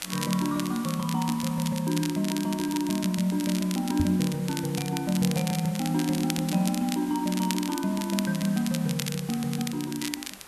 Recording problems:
hiss; slope -2 dB per octave, SNR 16 dB
crackle; vinyl, SNR 9 dB
microphone bump; at 4 s; peak +3 dB vs average level

